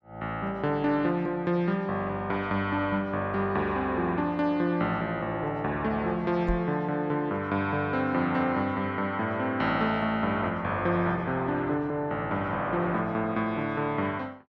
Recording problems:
microphone thump; at 6.5 s; peak 0 dB vs average level

